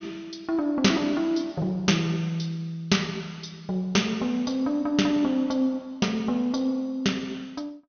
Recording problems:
low-pass filter; nothing above 6.3 kHz

